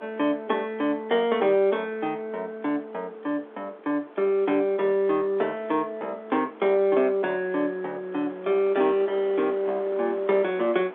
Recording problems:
phone line; 260 Hz to 3.6 kHz, G.711
wind on the microphone; below 1.2 kHz, SNR 21 dB

